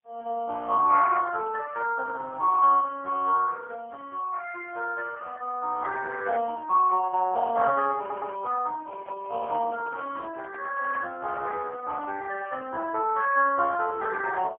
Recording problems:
telephone audio; 300 Hz to 2.1 kHz, AMR-NB, then MP3
audio stuttering; at 8 s
microphone handling noise; from 8.5 to 12 s; peak -11 dB vs average level

